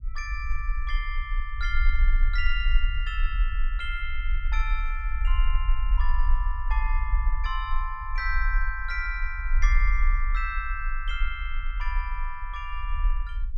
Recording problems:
low-frequency rumble; below 42 Hz, SNR -4 dB

